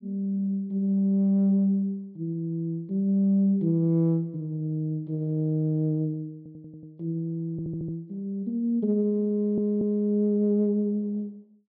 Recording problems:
low-pass filter; nothing above 5.5 kHz
stutter; at 6.5 s, at 7.5 s and at 9.5 s

